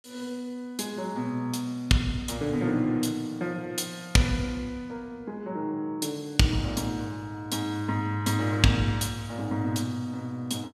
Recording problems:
none

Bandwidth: 14.5 kHz